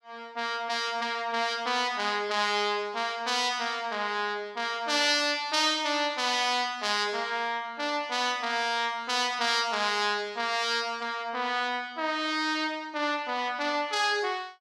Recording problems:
none

